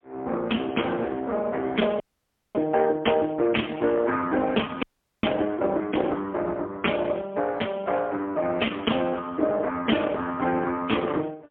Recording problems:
phone line; 240 Hz to 3.3 kHz, AMR-NB, then MP3
frozen audio; at 2 s for 0.5 s and at 5 s

